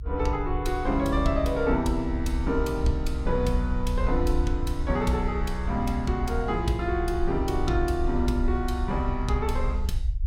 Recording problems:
low-frequency rumble; below 66 Hz, SNR 3 dB

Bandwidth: 17 kHz